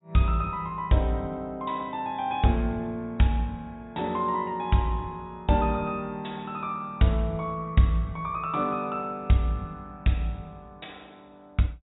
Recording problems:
treble cut off; nothing above 4 kHz

